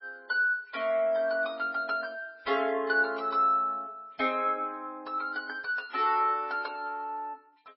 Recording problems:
codec artefacts; MP3, log-spectral distance 2 dB, nothing above 4.5 kHz

